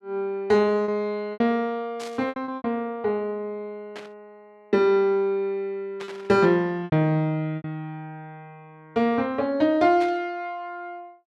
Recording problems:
lost packets; 5% of the sound replaced, filled with repeated pitch periods
burst of static; 4 times, first at 2 s; peak -11 dB vs average level

